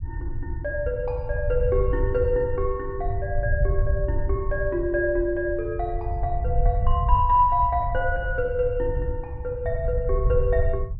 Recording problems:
treble cut off; nothing above 5.5 kHz
rumble; below 82 Hz, SNR 3 dB

